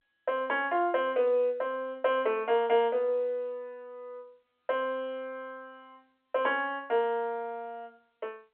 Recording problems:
phone line; 300 Hz to 3.4 kHz, G.711

